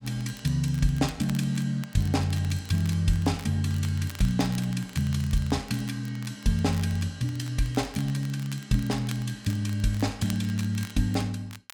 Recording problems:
crackle; vinyl, SNR 19 dB

